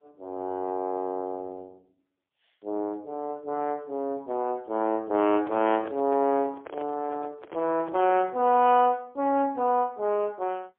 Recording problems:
phone line; 260 Hz to 3.3 kHz, AMR-NB, then MP3
microphone handling noise; from 5 to 8.5 s; peak -10 dB vs average level

